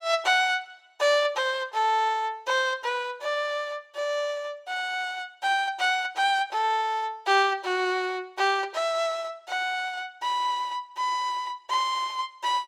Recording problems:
none

